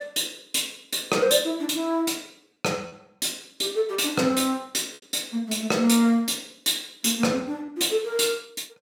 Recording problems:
lost packets; 1.4% of the sound replaced, filled with repeated pitch periods

